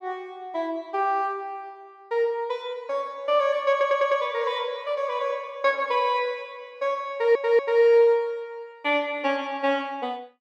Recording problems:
stutter; at 3.5 s and at 7 s

